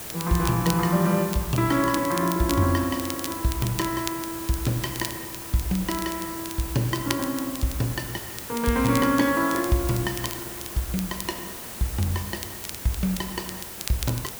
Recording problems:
background hiss; slope -3 dB per octave, SNR 8 dB
crackling; vinyl, SNR 12 dB

